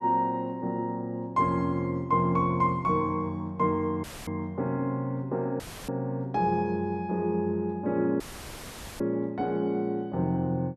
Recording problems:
audio cutting out; at 4 s, at 5.5 s and at 8 s for 1 s; filled with static

